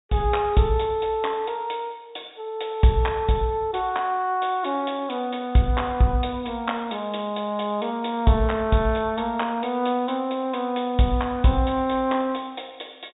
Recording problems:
treble cut off; nothing above 4 kHz

